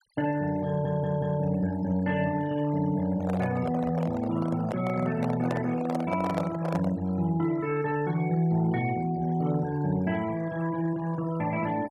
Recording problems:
denoising artefacts; signal-to-artefact ratio 18 dB
audio stuttering; at 0.5 s
handling noise; from 3 to 7 s; peak +1 dB vs average level

